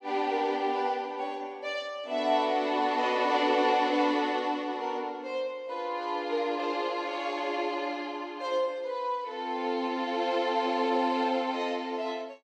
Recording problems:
none

